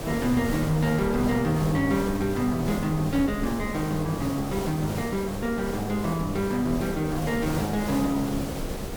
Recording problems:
background hiss; SNR 8 dB
rumble; below 130 Hz, SNR 13 dB

